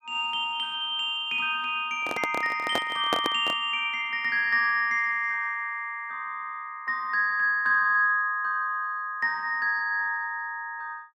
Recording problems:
handling noise; from 2 to 3.5 s; peak +2 dB vs average level

